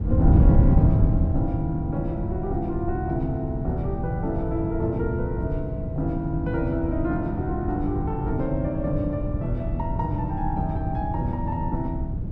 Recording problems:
wind on the microphone; below 140 Hz, SNR -1 dB

